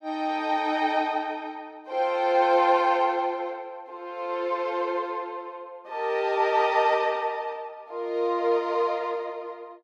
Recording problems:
none

